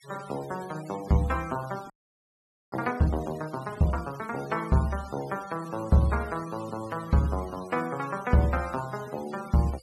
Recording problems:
denoising artefacts; signal-to-artefact ratio 19 dB
audio freezing; at 2 s for 1 s

